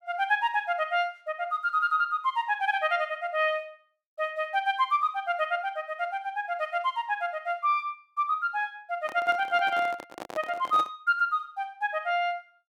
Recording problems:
handling noise; from 9 to 11 s; peak -5 dB vs average level

